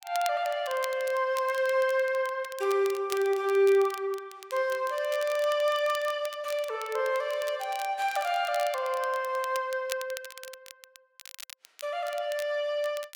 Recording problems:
crackling; vinyl, SNR 16 dB

